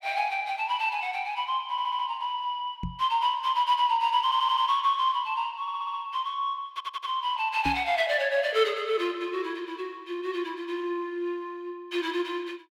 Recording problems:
audio stuttering; 4 times, first at 1.5 s
knock on the microphone; at 3 s and at 7.5 s; peak -1 dB vs average level

